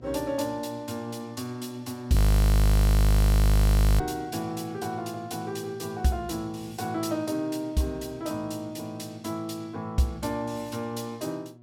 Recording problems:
hum; 60 Hz, harmonics up to 960 Hz, SNR 21 dB
audio freezing; at 2 s for 2 s

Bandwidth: 16 kHz